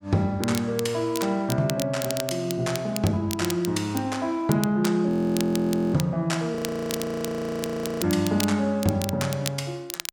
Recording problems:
crackle; vinyl, SNR 10 dB
frozen audio; at 5 s for 1 s and at 6.5 s for 1.5 s

